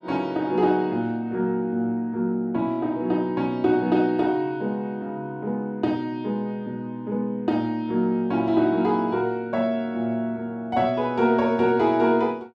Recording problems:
none

